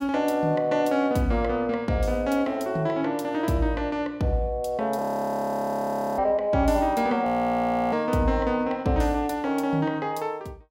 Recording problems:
audio freezing; at 5 s for 1 s and at 7.5 s for 0.5 s

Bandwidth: 16 kHz